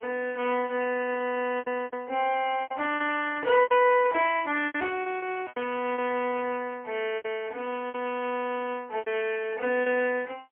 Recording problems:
phone line; 260 Hz to 3.1 kHz, AMR-NB, then MP3
lost packets; 9% of the sound replaced, filled with repeated pitch periods

